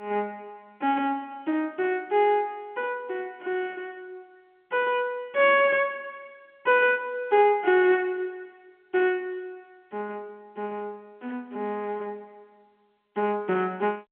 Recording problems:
phone line; 260 Hz to 3.3 kHz, G.711

